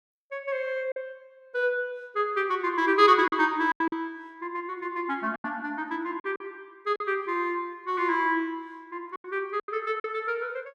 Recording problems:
packet loss; 6% of the sound replaced, filled with silence

